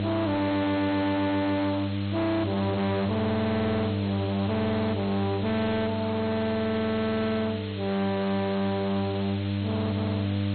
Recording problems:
codec artefacts; MP2, log-spectral distance 9 dB, nothing above 4.2 kHz
distorted audio; hard clipping, uneven, signal-to-distortion ratio 6 dB
hum; 50 Hz, harmonics up to 900 Hz, SNR 3 dB
background hiss; SNR 13 dB

